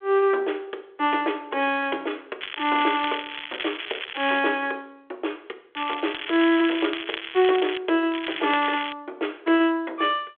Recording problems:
phone line; 300 Hz to 3.5 kHz, G.726
crackling; from 2.5 to 4.5 s, from 6 to 8 s and at 8 s; loose cable, SNR 8 dB

